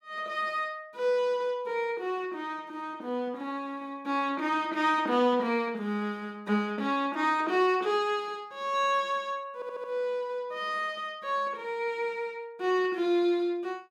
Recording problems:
audio stuttering; at 9.5 s

